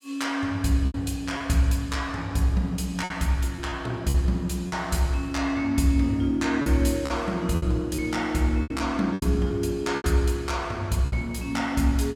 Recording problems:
packet loss; 7% of the sound replaced, filled with repeated pitch periods

